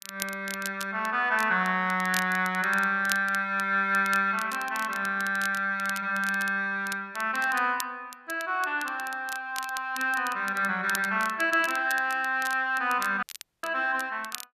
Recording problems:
crackle; vinyl, SNR 14 dB
audio cutting out; at 13 s

